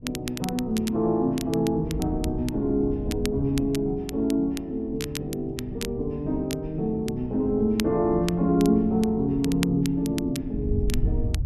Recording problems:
wind on the microphone; below 92 Hz, SNR 11 dB
crackling; vinyl, SNR 14 dB

